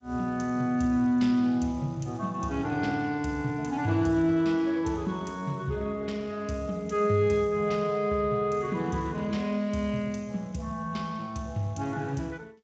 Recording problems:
lossy compression; G.722, then Speex, log-spectral distance 2 dB, nothing above 7.3 kHz

